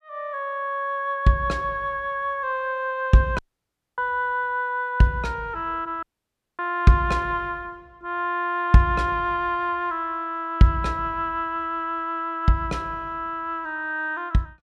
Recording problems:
audio cutting out; at 3.5 s for 0.5 s and at 6 s for 0.5 s

